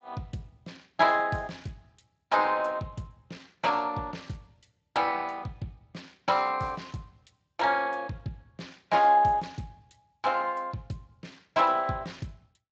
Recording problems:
lossy codec; Speex, log-spectral distance 4 dB

